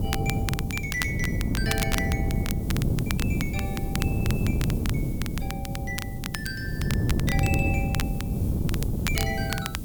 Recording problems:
background hiss; slope +5 dB per octave, SNR 12 dB
wind on the microphone; below 220 Hz, SNR -6 dB
crackling; vinyl, SNR 2 dB

